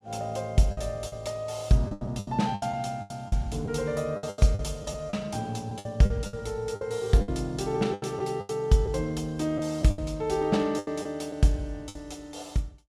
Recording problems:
lost packets; 11% of the sound replaced, filled with the last packet

